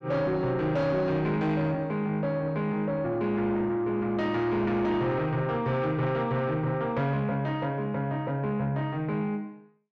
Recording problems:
distortion; soft clipping, signal-to-distortion ratio 11 dB

